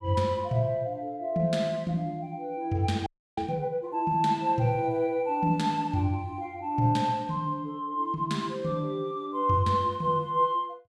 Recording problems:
audio freezing; at 3 s

